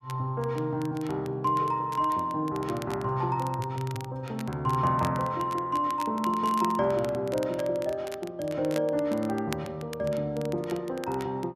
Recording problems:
crackle; vinyl, SNR 18 dB

